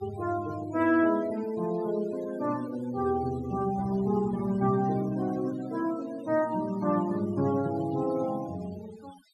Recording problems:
denoising artefacts; signal-to-artefact ratio 17 dB

